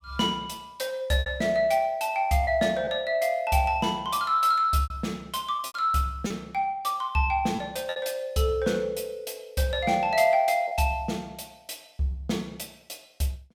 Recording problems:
packet loss; 4% of the sound replaced, filled with repeated pitch periods

